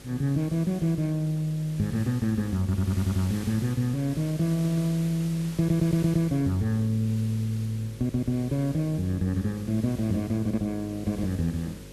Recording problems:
hum; 50 Hz, harmonics up to 550 Hz, SNR 19 dB
background hiss; slope -1 dB per octave, SNR 19 dB
stutter; 4 times, first at 2.5 s

